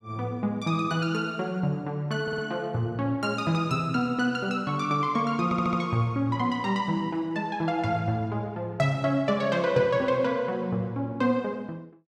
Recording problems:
audio stuttering; at 2 s and at 5.5 s

